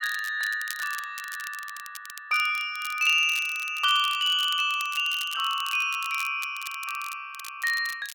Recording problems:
crackle; vinyl, SNR 15 dB

